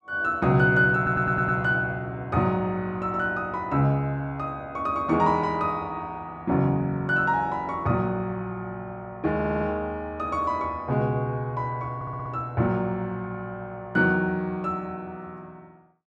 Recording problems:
audio stuttering; at 1 s, at 9.5 s and at 12 s

